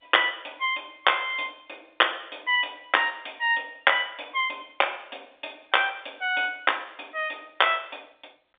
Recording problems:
phone line; 260 Hz to 3.7 kHz, G.711

